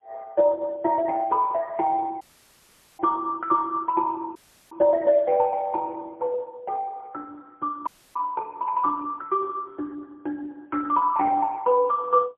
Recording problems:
phone line; 240 Hz to 2.1 kHz, AMR-NB, then MP3
audio cutting out; at 2 s for 1 s, at 4.5 s and at 8 s

